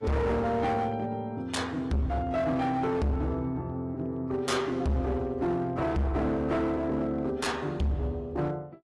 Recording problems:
lossy compression; AAC, log-spectral distance 2 dB, nothing above 11.3 kHz
distorted audio; hard clipping, signal-to-distortion ratio 6 dB

